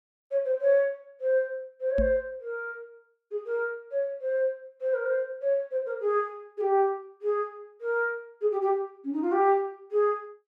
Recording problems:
knock on the microphone; at 2 s; peak +1 dB vs average level

